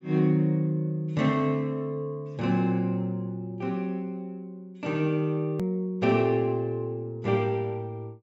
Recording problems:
low-pass filter; nothing above 8 kHz
edit click; at 5.5 s

